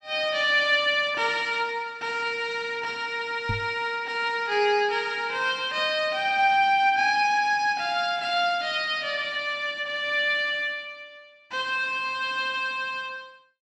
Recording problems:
knock on the microphone; at 3.5 s; peak -2 dB vs average level

